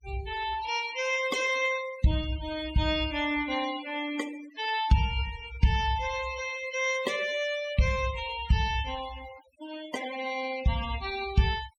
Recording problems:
denoising artefacts; signal-to-artefact ratio 14 dB

